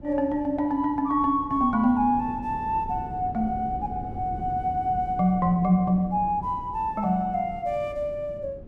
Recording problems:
wind noise; below 260 Hz, SNR 15 dB

